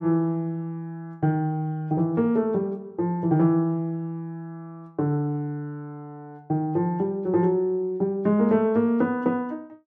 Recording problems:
none

